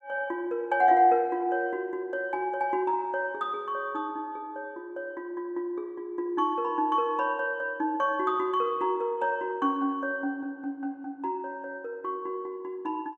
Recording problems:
none

